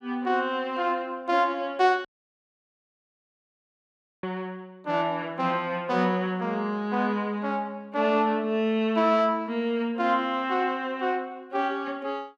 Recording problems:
audio cutting out; at 2 s for 2 s

